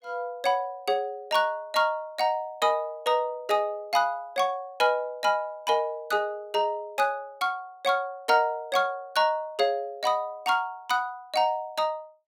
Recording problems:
none

